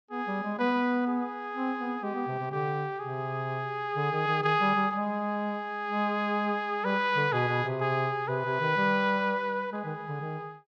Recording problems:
none

